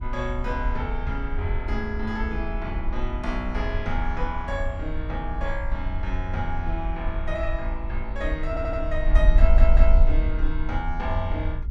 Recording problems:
wind noise; below 48 Hz, SNR -3 dB
stutter; at 8.5 s and at 9.5 s

